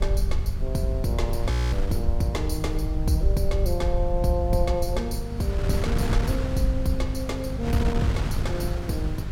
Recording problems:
electrical hum; 50 Hz, harmonics up to 600 Hz, SNR 7 dB
hiss; SNR 30 dB
rumble; below 66 Hz, SNR 1 dB
wind noise; below 170 Hz, SNR 4 dB
audio freezing; at 1.5 s

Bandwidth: 16.5 kHz